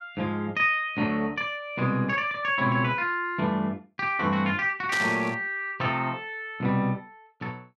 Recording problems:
static burst; at 5 s; peak -1 dB vs average level

